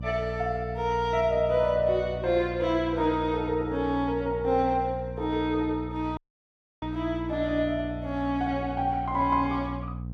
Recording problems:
hum; 60 Hz, harmonics up to 480 Hz, SNR 10 dB
audio cutting out; at 6 s for 0.5 s

